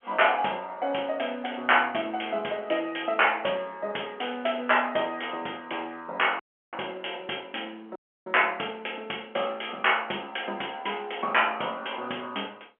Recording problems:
telephone audio; 260 Hz to 3.1 kHz, G.711
dropout; at 6.5 s and at 8 s

